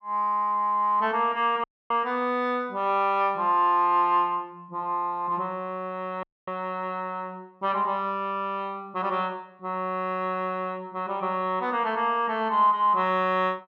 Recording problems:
audio cutting out; at 1.5 s and at 6 s

